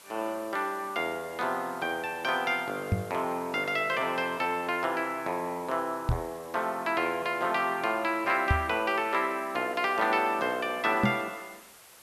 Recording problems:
hiss; SNR 21 dB
knock on the microphone; 4 times, first at 3 s; peak +6 dB vs average level

